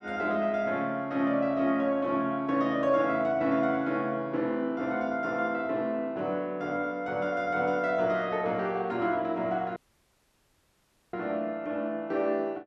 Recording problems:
audio cutting out; at 10 s for 1.5 s

